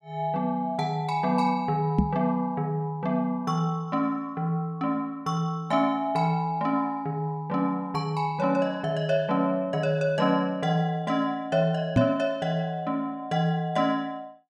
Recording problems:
microphone bump; at 2 s and at 12 s; peak +8 dB vs average level

